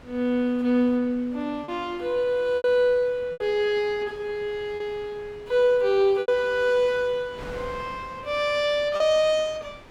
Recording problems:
wind on the microphone; below 1.4 kHz, SNR 22 dB
lost packets; 4% of the sound replaced, filled with repeated pitch periods

